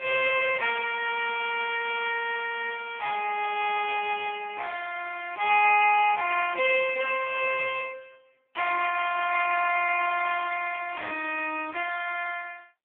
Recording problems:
phone line; 370 Hz to 3.3 kHz, AMR-NB

